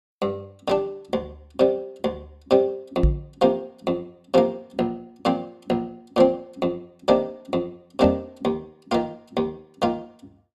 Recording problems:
microphone thump; at 3 s and at 8 s; peak +9 dB vs average level

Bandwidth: 14.5 kHz